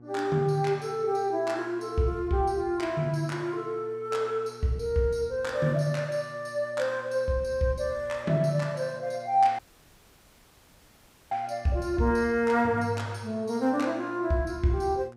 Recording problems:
electrical hum; 60 Hz, harmonics up to 1.2 kHz, SNR 23 dB
audio cutting out; at 9.5 s for 1.5 s

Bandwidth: 15.5 kHz